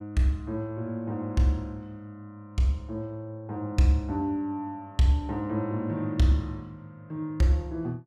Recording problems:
none

